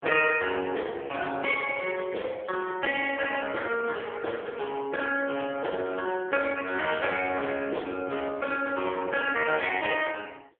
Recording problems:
phone line; 280 Hz to 3.3 kHz, AMR-NB

